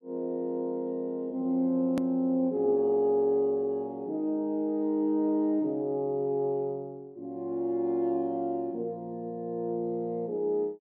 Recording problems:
edit click; at 2 s

